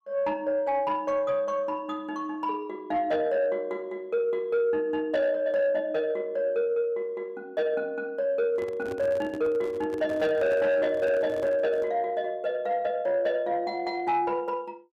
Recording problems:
distorted audio; soft clipping, signal-to-distortion ratio 12 dB
microphone handling noise; from 8.5 to 12 s; peak -7 dB vs average level

